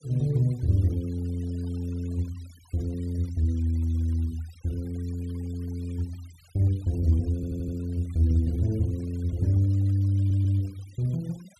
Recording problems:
denoising artefacts; signal-to-artefact ratio 27 dB
stutter; at 7.5 s and at 10 s

